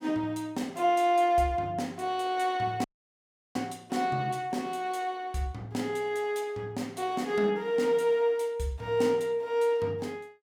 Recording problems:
dropout; at 3 s for 0.5 s

